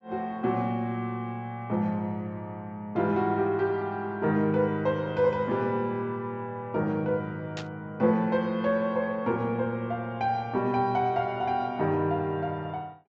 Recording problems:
low-pass filter; nothing above 8 kHz
burst of static; at 7.5 s; peak -6 dB vs average level

